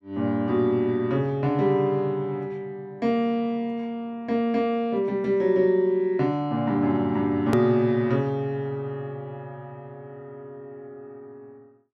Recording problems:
hard cut with a click; at 7.5 s

